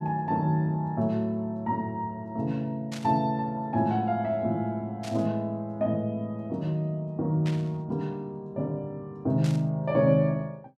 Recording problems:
burst of static; 4 times, first at 3 s; peak -8 dB vs average level

